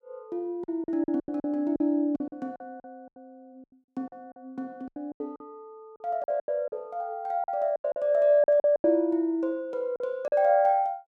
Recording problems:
lost packets; 13% of the sound replaced, filled with silence

